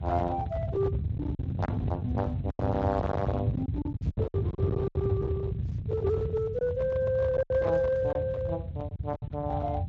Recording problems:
lossy compression; Speex, log-spectral distance 2 dB
distortion; hard clipping, signal-to-distortion ratio 11 dB
rumble; below 170 Hz, SNR 2 dB
packet loss; 7% of the sound replaced, filled with silence

